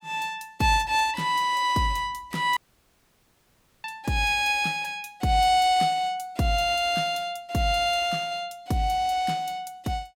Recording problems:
audio cutting out; at 2.5 s for 1.5 s

